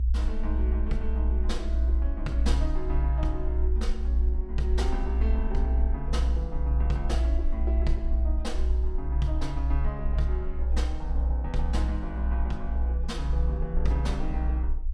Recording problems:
rumble; below 62 Hz, strongest tone 60 Hz, SNR -7 dB

